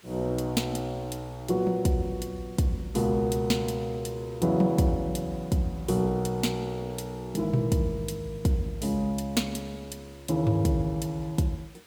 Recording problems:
background hiss; slope -1 dB per octave, SNR 26 dB

